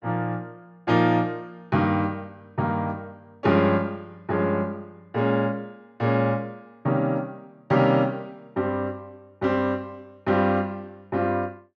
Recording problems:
none

